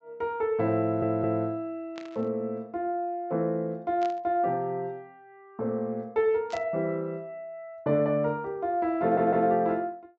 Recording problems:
low-pass filter; nothing above 8 kHz
audio stuttering; at 1 s and at 9 s
static burst; at 2 s, at 4 s and at 6.5 s; peak -11 dB vs average level

